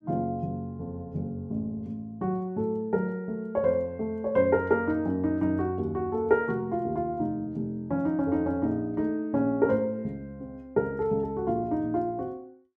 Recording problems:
none

